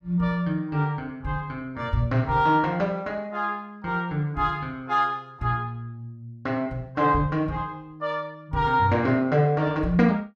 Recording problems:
none

